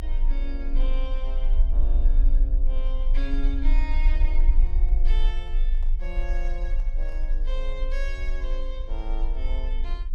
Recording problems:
rumble; below 38 Hz, strongest tone 24 Hz, SNR -12 dB
microphone handling noise; from 4 to 7.5 s; peak -9 dB vs average level

